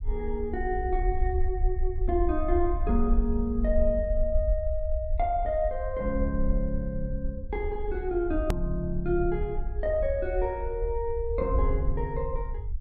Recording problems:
rumble; below 58 Hz, SNR 2 dB
edit click; at 8.5 s

